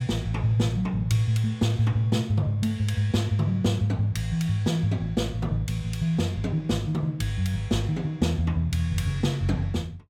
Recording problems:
none

